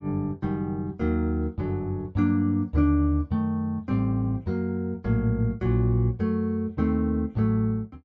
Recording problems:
none

